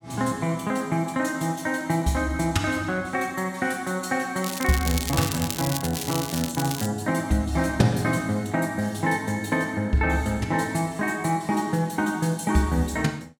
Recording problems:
crackling; from 4.5 to 7 s; loose cable, SNR 6 dB

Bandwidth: 17 kHz